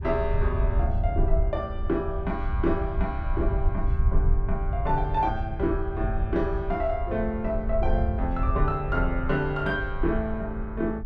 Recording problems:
wind noise; below 74 Hz, SNR 1 dB

